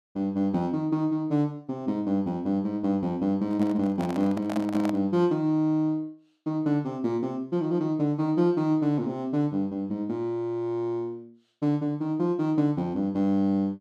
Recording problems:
microphone handling noise; from 3.5 to 5 s; peak -4 dB vs average level

